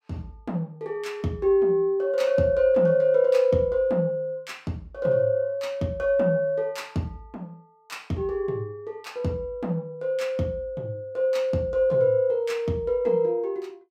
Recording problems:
none

